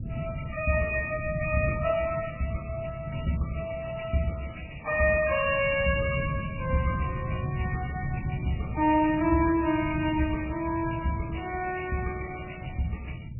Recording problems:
lossy compression; MP3, log-spectral distance 8 dB, nothing above 2.5 kHz
wind on the microphone; below 170 Hz, SNR 8 dB

